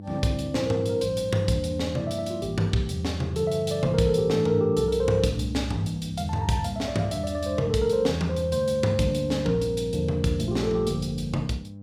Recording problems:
hum; 50 Hz, harmonics up to 600 Hz, SNR 15 dB

